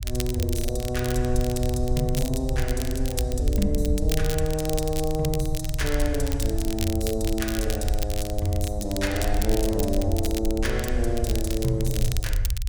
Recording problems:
low-frequency rumble; below 70 Hz, SNR 2 dB
crackling; vinyl, SNR 8 dB

